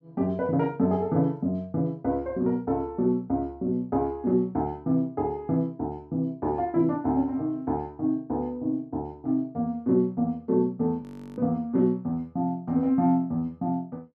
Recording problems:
audio freezing; at 11 s

